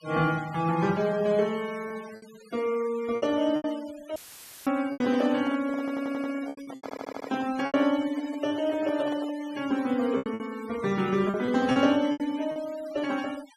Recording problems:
noise reduction artefacts; signal-to-artefact ratio 18 dB
packet loss; 8% of the sound replaced, filled with repeated pitch periods
dropout; at 4 s for 0.5 s; filled with static
handling noise; from 5 to 9.5 s; peak -8 dB vs average level
audio stuttering; at 6 s and at 7 s

